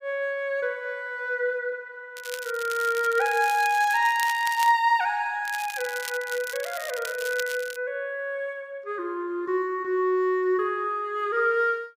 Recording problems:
crackle; from 2 to 4.5 s and from 5.5 to 8 s; loose cable, SNR 13 dB

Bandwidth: 15.5 kHz